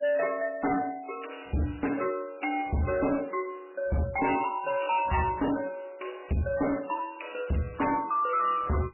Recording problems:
codec artefacts; MP3, log-spectral distance 5 dB, nothing above 2.8 kHz
distorted audio; hard clipping, signal-to-distortion ratio 6 dB

